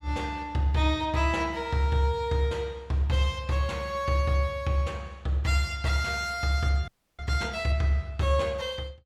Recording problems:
frozen audio; at 7 s

